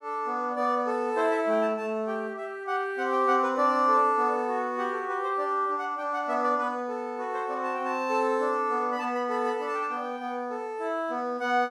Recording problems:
none

